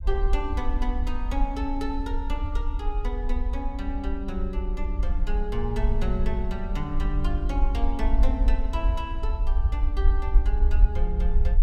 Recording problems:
rumble; below 52 Hz, SNR -5 dB

